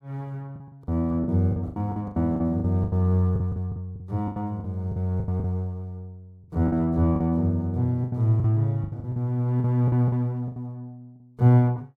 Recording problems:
lost packets; 14% of the sound replaced, filled with the last packet

